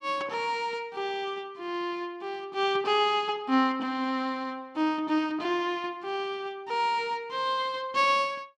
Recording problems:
none

